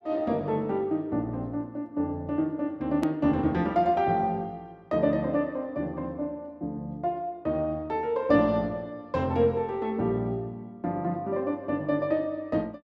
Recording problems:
hard cut with a click; at 3 s

